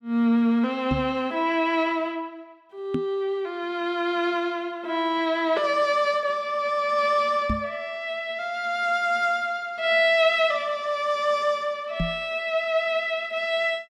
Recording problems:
knock on the microphone; 4 times, first at 1 s; peak +1 dB vs average level

